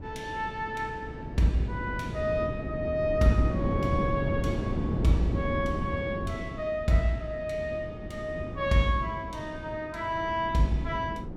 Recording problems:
wind on the microphone; below 300 Hz, SNR 5 dB

